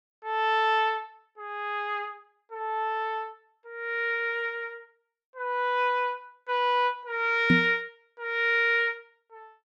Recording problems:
knock on the microphone; at 7.5 s; peak +8 dB vs average level

